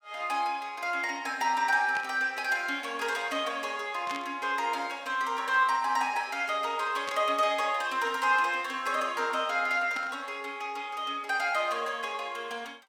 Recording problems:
static burst; 4 times, first at 2 s; peak -6 dB vs average level

